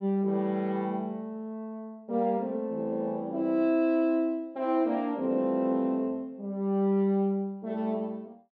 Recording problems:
none

